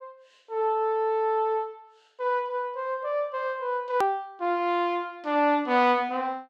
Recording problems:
edit click; at 4 s

